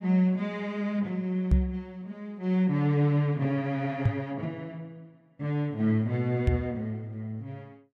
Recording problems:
microphone bump; at 1.5 s, at 4 s and at 6.5 s; peak +9 dB vs average level

